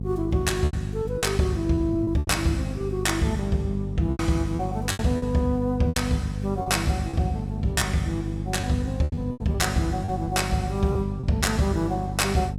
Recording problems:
hum; 50 Hz, harmonics up to 500 Hz, SNR 5 dB
packet loss; 8% of the sound replaced, filled with repeated pitch periods

